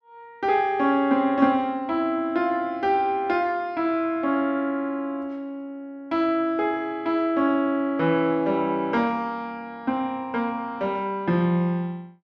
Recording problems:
none

